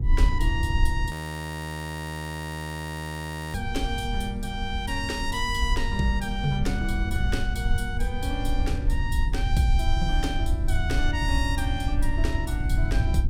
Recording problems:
hum; 60 Hz, harmonics up to 840 Hz, SNR 13 dB
low-frequency rumble; below 78 Hz, SNR -2 dB
audio freezing; at 1 s for 2.5 s

